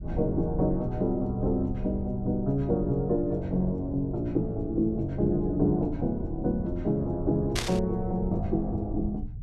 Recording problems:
rumble; below 92 Hz, SNR 10 dB
burst of static; at 7.5 s; peak +3 dB vs average level

